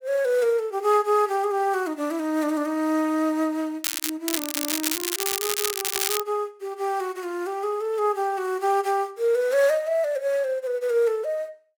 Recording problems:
crackling; at 4 s and from 4.5 to 6 s; loose cable, SNR 1 dB

